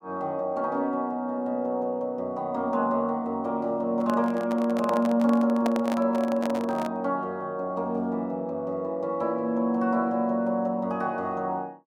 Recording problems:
microphone handling noise; from 4 to 7 s; peak 0 dB vs average level

